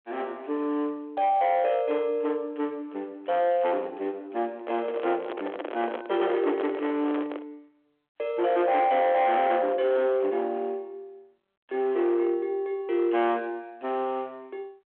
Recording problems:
telephone audio; 300 Hz to 3.4 kHz, G.726
distortion; hard clipping, signal-to-distortion ratio 11 dB
microphone handling noise; from 4.5 to 7.5 s; peak -2 dB vs average level

